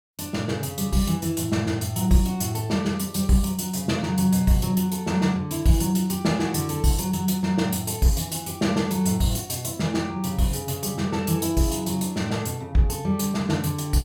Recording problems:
none

